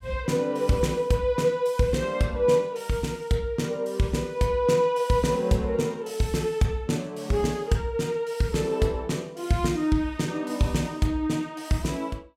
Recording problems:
none

